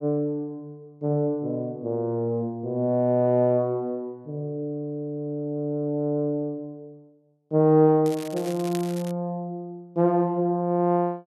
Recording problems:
crackling; from 8 to 9 s; loose cable, SNR 17 dB

